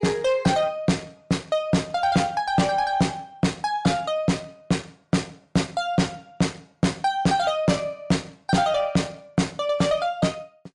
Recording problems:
lossy codec; MP3, log-spectral distance 2 dB, nothing above 10.1 kHz
distorted audio; soft clipping, signal-to-distortion ratio 7 dB

